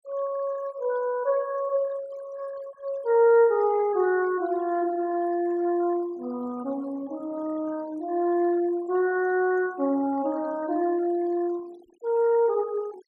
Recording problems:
denoising artefacts; signal-to-artefact ratio 22 dB

